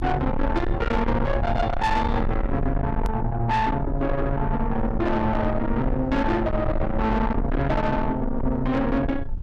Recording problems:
distortion; soft clipping, signal-to-distortion ratio 8 dB
rumble; below 250 Hz, SNR 4 dB
edit click; at 3 s

